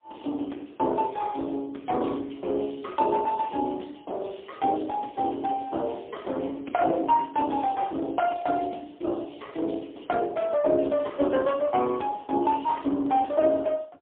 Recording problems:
telephone audio; 220 Hz to 3.5 kHz, AMR-NB, then MP3

